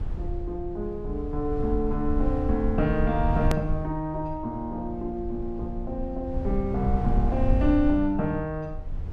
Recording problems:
low-frequency rumble; below 78 Hz, SNR 4 dB
hard cut with a click; at 3.5 s

